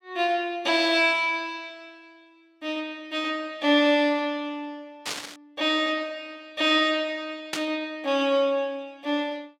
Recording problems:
static burst; at 5 s and at 7.5 s; peak 0 dB vs average level

